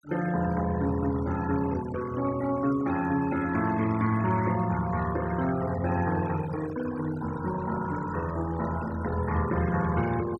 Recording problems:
noise reduction artefacts; signal-to-artefact ratio 14 dB

